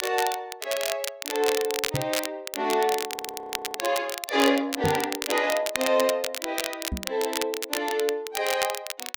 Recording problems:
crackle; vinyl, SNR 5 dB
microphone thump; at 2 s, at 5 s and at 7 s; peak +2 dB vs average level
audio freezing; at 3 s for 0.5 s

